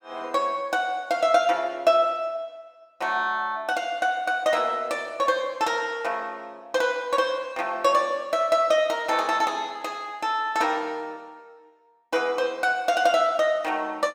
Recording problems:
none

